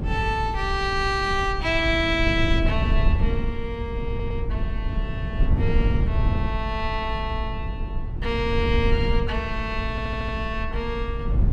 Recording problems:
low-frequency rumble; below 98 Hz, SNR 1 dB
stutter; at 4 s and at 10 s

